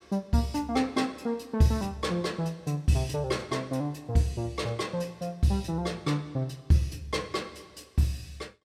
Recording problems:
none

